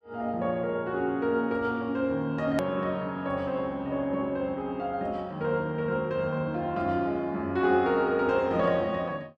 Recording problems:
hard cut with a click; at 2.5 s

